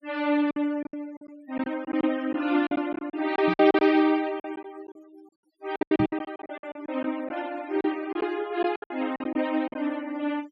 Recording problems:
noise reduction artefacts; signal-to-artefact ratio 23 dB
lost packets; 14% of the sound replaced, filled with silence
knock on the microphone; at 3.5 s and at 6 s; peak 0 dB vs average level

